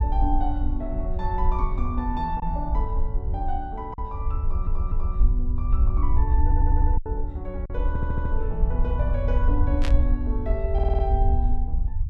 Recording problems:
low-frequency rumble; below 64 Hz, SNR -6 dB
packet loss; 1.7% of the sound replaced, filled with silence
stutter; 4 times, first at 4.5 s
burst of static; at 10 s; peak +3 dB vs average level

